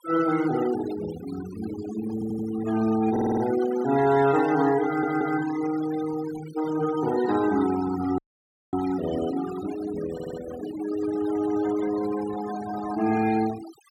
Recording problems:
denoising artefacts; signal-to-artefact ratio 12 dB
stutter; 4 times, first at 2 s
dropout; at 8 s for 0.5 s

